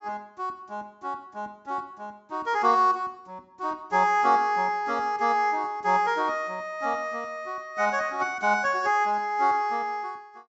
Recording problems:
treble missing; nothing above 8 kHz

